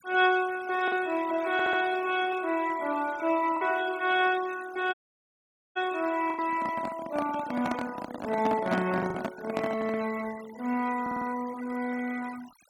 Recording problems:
denoising artefacts; signal-to-artefact ratio 17 dB
lost packets; 2% of the sound replaced, filled with the last packet
audio stuttering; at 1.5 s and at 11 s
audio cutting out; at 5 s for 1 s
microphone handling noise; from 6.5 to 10 s; peak +3 dB vs average level

